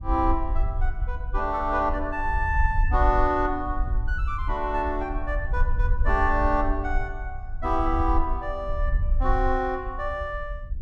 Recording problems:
low-frequency rumble; below 58 Hz, SNR 3 dB

